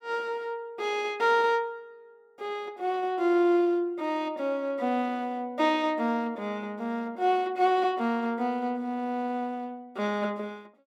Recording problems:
none

